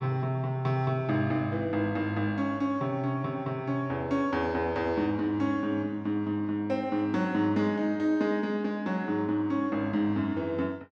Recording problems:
none

